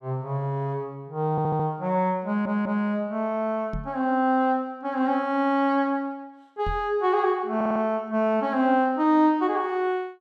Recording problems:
stutter; at 1.5 s, at 2.5 s and at 7.5 s
microphone bump; at 3.5 s and at 6.5 s; peak -4 dB vs average level

